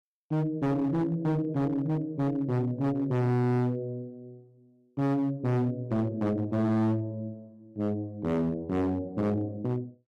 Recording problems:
distortion; hard clipping, signal-to-distortion ratio 7 dB

